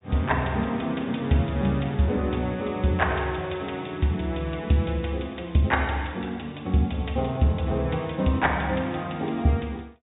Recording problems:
treble cut off; nothing above 4 kHz

